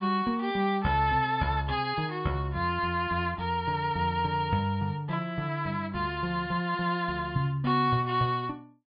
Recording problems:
treble cut off; nothing above 4.9 kHz

